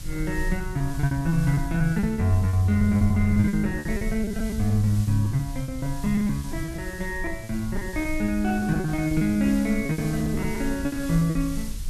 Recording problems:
hiss; slope +3 dB per octave, SNR 18 dB
low-frequency rumble; below 78 Hz, SNR 11 dB
packet loss; 19% of the sound replaced, filled with repeated pitch periods

